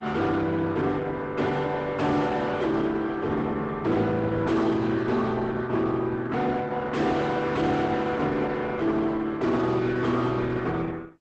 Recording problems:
codec artefacts; Opus, log-spectral distance 3 dB, nothing above 7.6 kHz
distortion; soft clipping, signal-to-distortion ratio 6 dB

